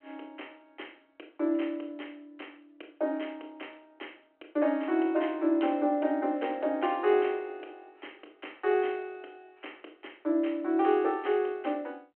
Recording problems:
phone line; 260 Hz to 3.2 kHz, G.726

